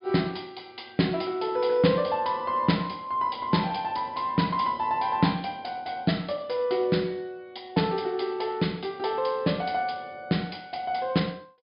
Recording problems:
treble missing; nothing above 5.1 kHz

